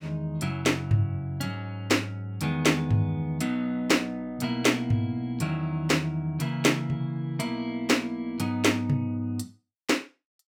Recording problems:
none

